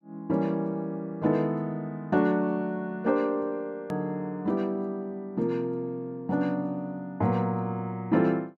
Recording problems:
edit click; at 4 s

